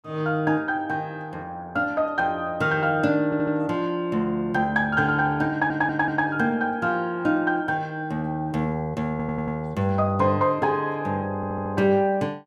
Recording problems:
audio stuttering; 4 times, first at 3.5 s

